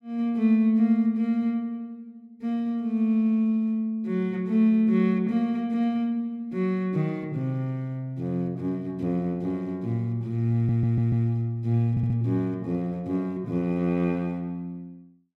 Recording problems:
stutter; at 11 s and at 12 s

